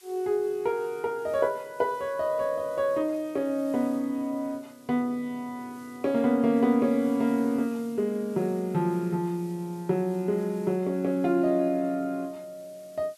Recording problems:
hiss; slope +4 dB per octave, SNR 27 dB

